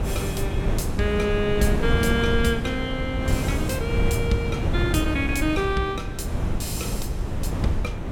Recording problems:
wind noise; below 200 Hz, SNR 0 dB

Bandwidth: 17 kHz